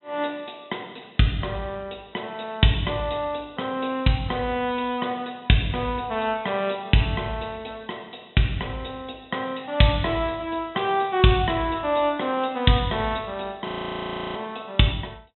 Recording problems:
treble missing; nothing above 3.9 kHz
frozen audio; at 14 s for 0.5 s

